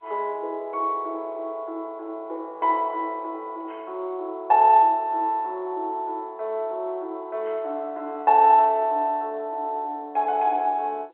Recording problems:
telephone audio; 320 Hz to 3.6 kHz, G.711

